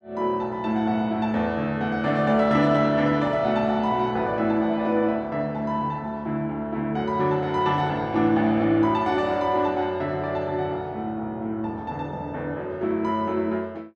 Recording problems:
none

